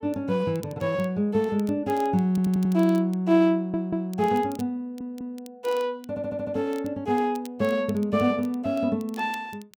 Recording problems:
crackle; vinyl, SNR 25 dB
stutter; 4 times, first at 2.5 s

